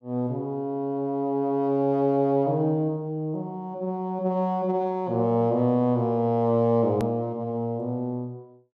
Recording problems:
edit click; at 7 s

